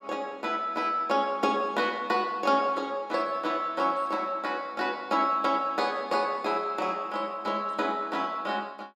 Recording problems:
none

